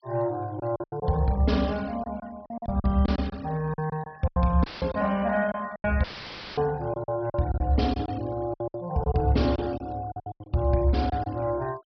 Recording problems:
treble cut off; nothing above 5.5 kHz
noise reduction artefacts; signal-to-artefact ratio 24 dB
packet loss; 13% of the sound replaced, filled with silence
audio cutting out; at 4.5 s and at 6 s for 0.5 s; filled with static

